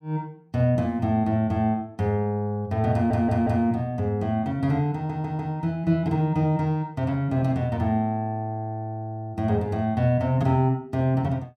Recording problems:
stutter; at 3 s and at 5 s

